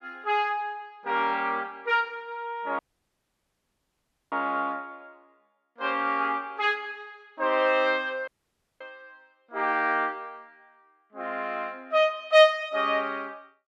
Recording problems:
audio cutting out; at 3 s for 1.5 s and at 8.5 s for 0.5 s

